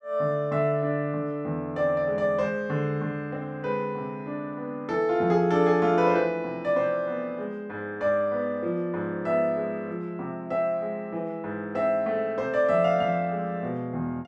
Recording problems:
none

